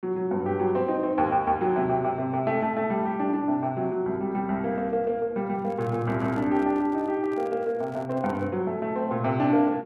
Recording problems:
microphone handling noise; from 5.5 to 8.5 s; peak -10 dB vs average level

